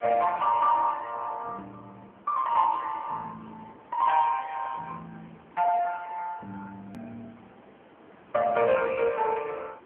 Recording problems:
phone line; 320 Hz to 3.2 kHz, AMR-NB
hiss; SNR 27 dB
hard cut with a click; at 7 s

